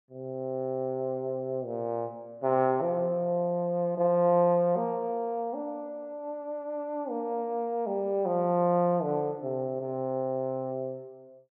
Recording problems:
none

